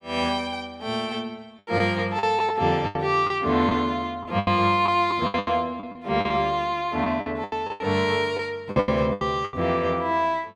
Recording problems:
lost packets; 11% of the sound replaced, filled with the last packet

